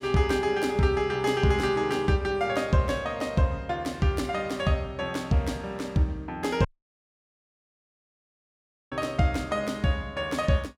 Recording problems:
audio cutting out; at 6.5 s for 2.5 s

